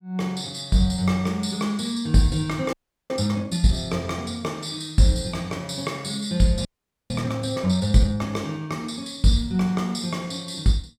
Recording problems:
audio freezing; at 2.5 s and at 6.5 s

